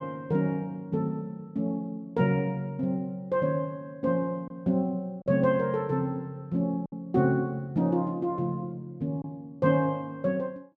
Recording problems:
lost packets; 1.3% of the sound replaced, filled with silence

